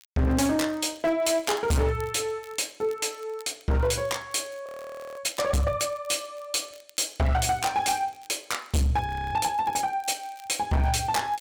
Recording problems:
distortion; hard clipping, signal-to-distortion ratio 8 dB
crackle; vinyl, SNR 27 dB
audio freezing; at 4.5 s for 0.5 s and at 9 s

